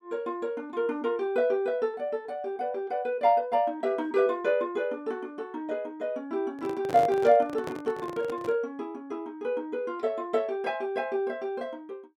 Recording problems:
microphone handling noise; from 6.5 to 8.5 s; peak -3 dB vs average level

